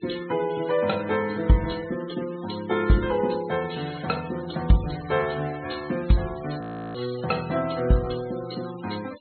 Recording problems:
treble cut off; nothing above 4.2 kHz
noise reduction artefacts; signal-to-artefact ratio 17 dB
frozen audio; at 6.5 s

